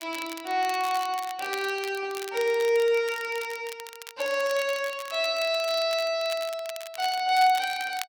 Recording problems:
crackling; vinyl, SNR 15 dB

